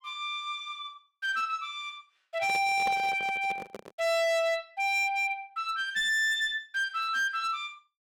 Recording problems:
distorted audio; hard clipping, signal-to-distortion ratio 12 dB
microphone handling noise; from 2.5 to 4 s; peak -5 dB vs average level

